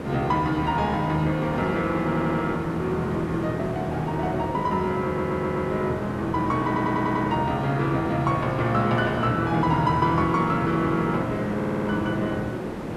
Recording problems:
background hiss; slope -9 dB per octave, SNR 7 dB
stutter; 4 times, first at 2 s

